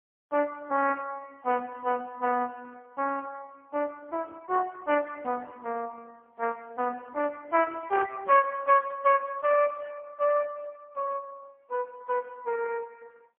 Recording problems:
phone line; 320 Hz to 2.7 kHz, AMR-NB, then MP3

